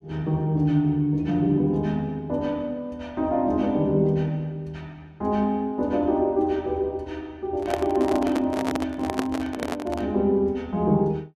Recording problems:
handling noise; from 7.5 to 10 s; peak +1 dB vs average level

